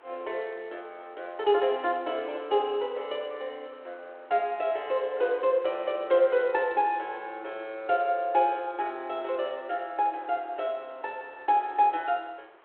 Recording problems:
phone line; 300 Hz to 3.5 kHz, G.726
hiss; SNR 27 dB

